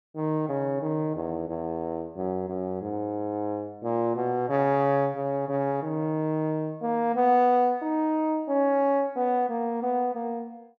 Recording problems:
none

